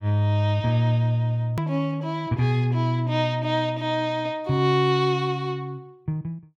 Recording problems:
edit click; at 1.5 s

